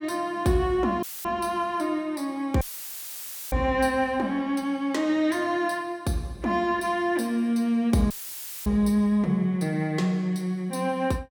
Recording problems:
audio cutting out; at 1 s, at 2.5 s for 1 s and at 8 s for 0.5 s; filled with static

